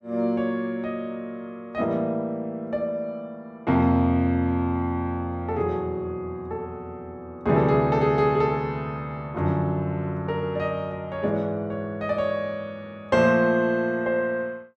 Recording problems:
none

